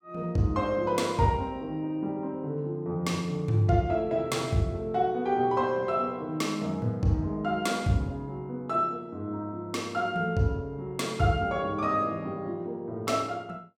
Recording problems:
none

